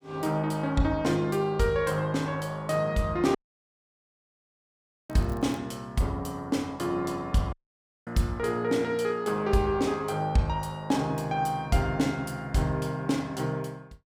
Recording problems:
dropout; at 3.5 s for 1.5 s and at 7.5 s for 0.5 s
crackling; at 5 s; loose cable, SNR 27 dB

